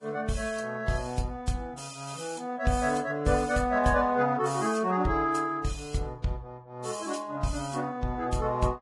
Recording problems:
lossy compression; Vorbis, log-spectral distance 3 dB, nothing above 10.7 kHz

